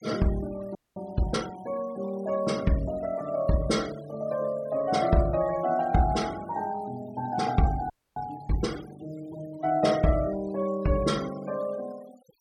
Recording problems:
denoising artefacts; signal-to-artefact ratio 19 dB
frozen audio; at 1 s and at 8 s

